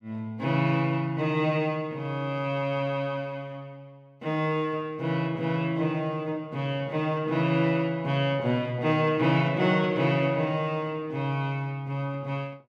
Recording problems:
none

